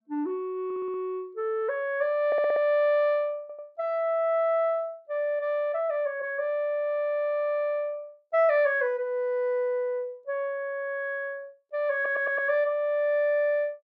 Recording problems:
audio stuttering; 4 times, first at 0.5 s

